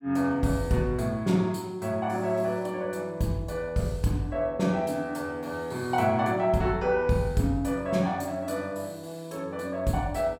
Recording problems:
none

